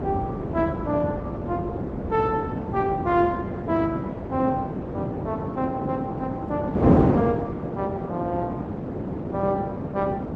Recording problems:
codec artefacts; Opus, log-spectral distance 2 dB
wind on the microphone; below 440 Hz, SNR 0 dB

